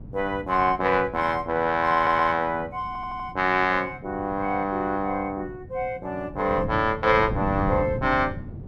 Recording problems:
wind noise; below 200 Hz, SNR 13 dB
stutter; at 2 s and at 3 s

